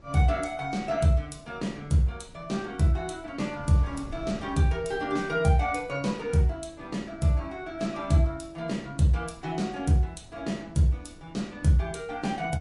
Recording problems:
codec artefacts; MP3, log-spectral distance 2 dB, nothing above 11 kHz
wind on the microphone; below 240 Hz, SNR 21 dB

